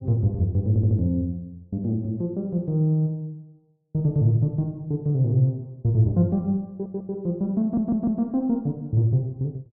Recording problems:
stutter; at 0.5 s, at 6.5 s and at 7.5 s

